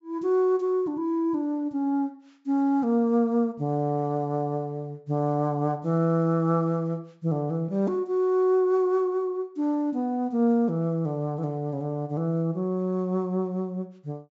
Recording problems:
low-pass filter; nothing above 8 kHz

